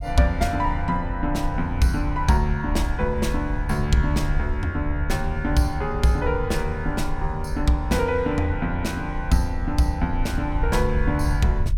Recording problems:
low-frequency rumble; below 68 Hz, SNR 6 dB

